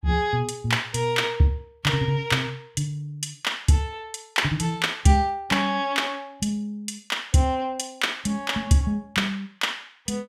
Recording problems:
none

